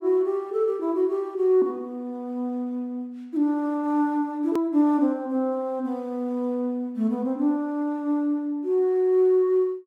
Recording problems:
hard cut with a click; at 4.5 s

